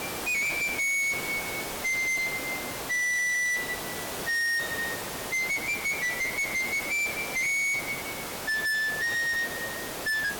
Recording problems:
distorted audio; hard clipping, uneven, signal-to-distortion ratio 6 dB
background hiss; slope -4 dB per octave, SNR 7 dB
stutter; at 3 s

